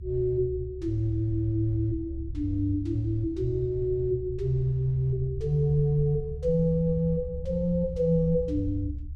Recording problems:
low-frequency rumble; below 72 Hz, strongest tone 70 Hz, SNR 10 dB

